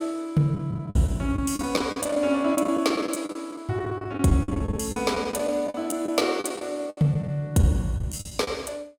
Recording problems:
packet loss; 14% of the sound replaced, filled with the last packet

